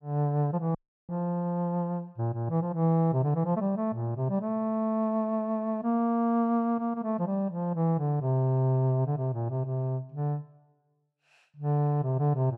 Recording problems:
audio cutting out; at 1 s

